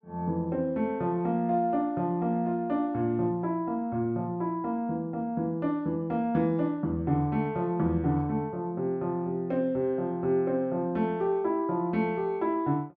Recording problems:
none

